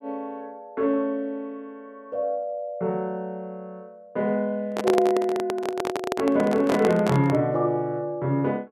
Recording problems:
microphone handling noise; from 4.5 to 7.5 s; peak +3 dB vs average level

